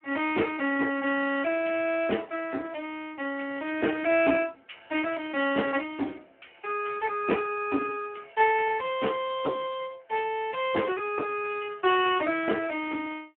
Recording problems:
phone line; 240 Hz to 3.1 kHz, Speex

